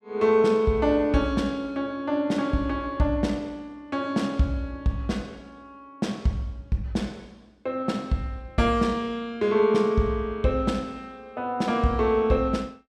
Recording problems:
none

